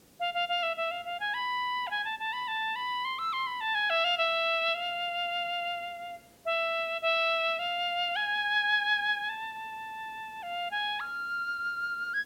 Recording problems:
hiss; SNR 28 dB

